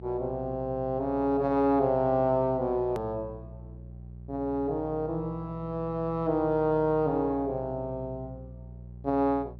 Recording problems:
electrical hum; 60 Hz, harmonics up to 420 Hz, SNR 16 dB
click at an edit; at 3 s

